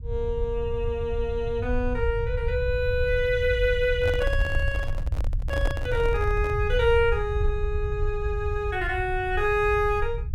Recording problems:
low-frequency rumble; below 82 Hz, SNR 4 dB
microphone handling noise; from 4 to 6.5 s; peak -3 dB vs average level

